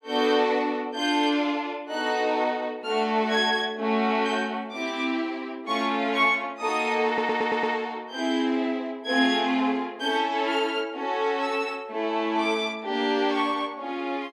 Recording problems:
stutter; at 7 s

